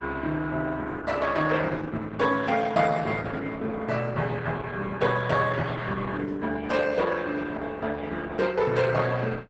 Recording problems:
codec artefacts; Opus, log-spectral distance 4 dB, nothing above 7.8 kHz

